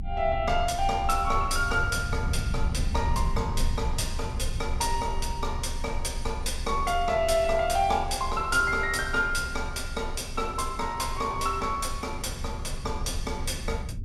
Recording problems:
rumble; below 76 Hz, strongest tone 24 Hz, SNR 6 dB

